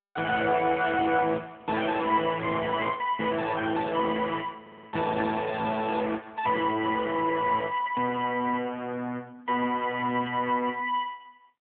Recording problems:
telephone audio; 190 Hz to 3.5 kHz, AMR-NB
audio stuttering; at 4.5 s

